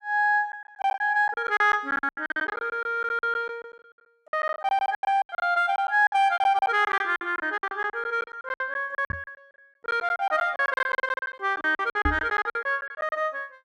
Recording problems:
lost packets; 20% of the sound replaced, filled with silence
microphone thump; at 9 s and at 12 s; peak +2 dB vs average level

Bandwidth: 14 kHz